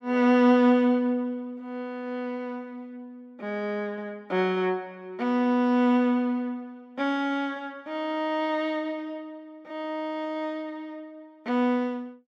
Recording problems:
none

